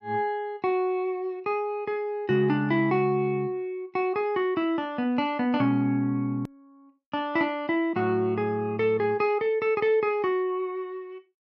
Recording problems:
click at an edit; at 6.5 s

